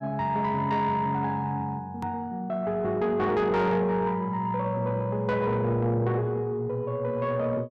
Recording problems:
distorted audio; soft clipping, signal-to-distortion ratio 12 dB
hard cut with a click; at 2 s

